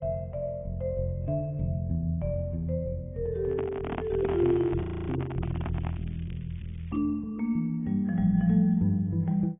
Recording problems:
treble missing; nothing above 3.2 kHz
codec artefacts; AAC, log-spectral distance 2 dB
handling noise; from 3.5 to 6 s; peak -1 dB vs average level
crackling; from 4 to 5 s and from 5.5 to 7 s; loose cable, SNR 29 dB
audio freezing; at 5 s

